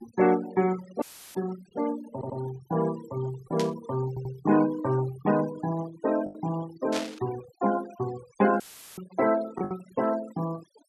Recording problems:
noise reduction artefacts; signal-to-artefact ratio 15 dB
lost packets; 1.6% of the sound replaced, filled with the last packet
audio cutting out; at 1 s and at 8.5 s; filled with static
audio stuttering; at 2 s and at 4 s
burst of static; at 3.5 s and at 7 s; peak -1 dB vs average level

